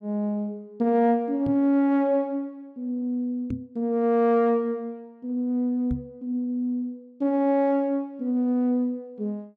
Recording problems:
knock on the microphone; at 1.5 s, at 3.5 s and at 6 s; peak -2 dB vs average level

